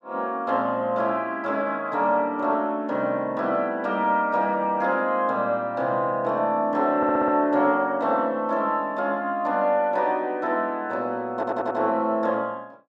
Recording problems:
audio stuttering; at 7 s and at 11 s

